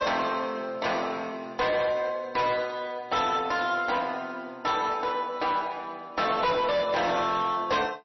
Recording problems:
lossy codec; MP3, then MP3, log-spectral distance 3 dB, nothing above 5.8 kHz
distorted audio; hard clipping, uneven, signal-to-distortion ratio 10 dB

